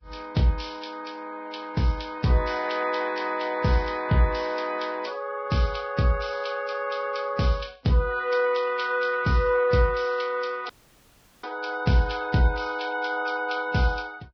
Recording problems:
lossy codec; Vorbis, log-spectral distance 5 dB, nothing above 5.7 kHz
audio cutting out; at 11 s for 0.5 s

